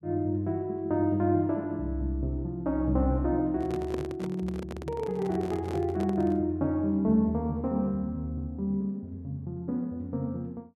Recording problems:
handling noise; from 3.5 to 6.5 s; peak -3 dB vs average level

